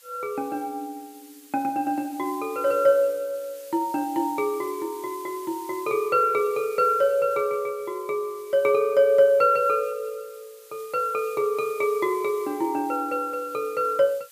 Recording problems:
background hiss; slope +4 dB per octave, SNR 22 dB

